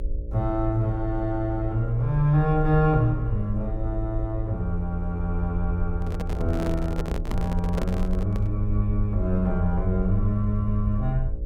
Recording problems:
electrical hum; 60 Hz, harmonics up to 600 Hz, SNR 16 dB
low-frequency rumble; below 54 Hz, strongest tone 30 Hz, SNR 6 dB
handling noise; from 6 to 8.5 s; peak -2 dB vs average level

